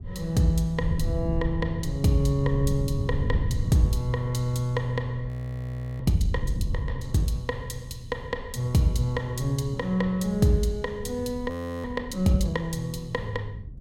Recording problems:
wind noise; below 120 Hz, SNR 7 dB
audio freezing; at 5.5 s for 0.5 s and at 12 s

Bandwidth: 16.5 kHz